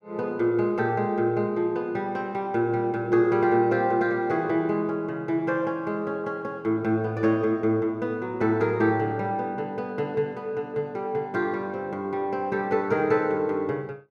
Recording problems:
none

